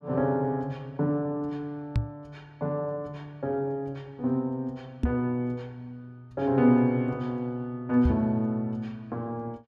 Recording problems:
knock on the microphone; at 2 s, at 5 s and at 8 s; peak +7 dB vs average level

